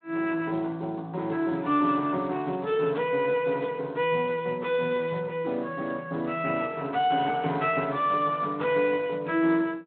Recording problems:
phone line; 170 Hz to 3.6 kHz, Speex

